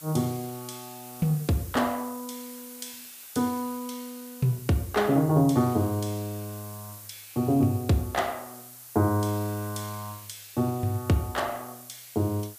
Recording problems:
background hiss; slope +1 dB per octave, SNR 16 dB

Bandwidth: 15 kHz